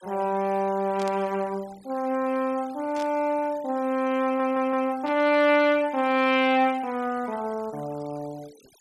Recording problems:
denoising artefacts; signal-to-artefact ratio 24 dB
burst of static; at 1 s, at 3 s and at 5 s; peak -12 dB vs average level
stutter; at 4 s

